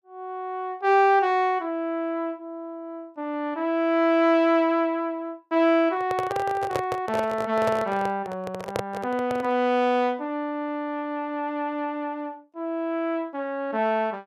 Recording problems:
microphone handling noise; from 6 to 9.5 s; peak +1 dB vs average level

